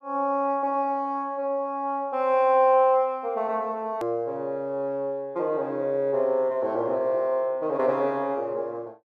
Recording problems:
edit click; at 4 s

